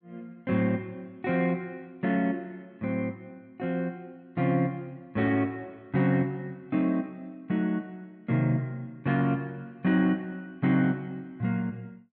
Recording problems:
none

